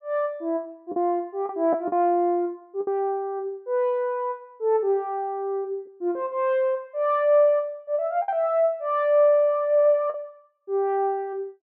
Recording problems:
lost packets; 3% of the sound replaced, filled with the last packet

